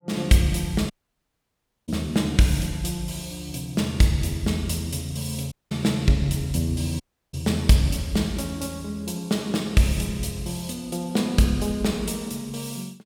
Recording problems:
dropout; at 1 s for 1 s, at 5.5 s and at 7 s

